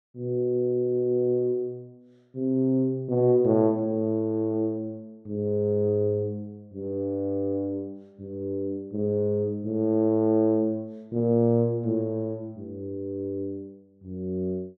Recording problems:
none

